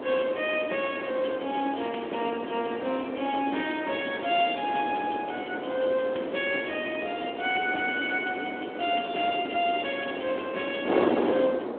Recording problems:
phone line; 240 Hz to 3.4 kHz, Speex
hiss; SNR 23 dB
wind noise; below 650 Hz, SNR 4 dB

